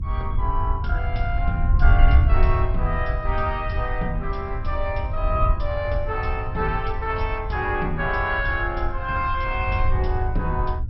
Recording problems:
lossy compression; MP2, log-spectral distance 2 dB, nothing above 5.5 kHz
wind on the microphone; below 76 Hz, SNR -1 dB

